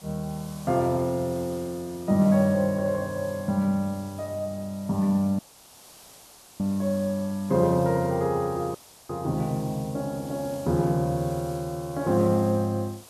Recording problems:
background hiss; SNR 21 dB
audio cutting out; at 5.5 s for 1 s and at 9 s

